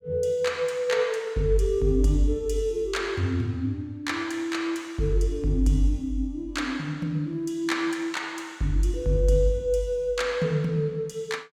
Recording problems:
none

